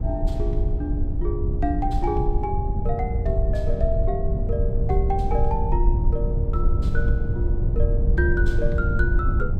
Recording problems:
low-frequency rumble; below 82 Hz, SNR -4 dB

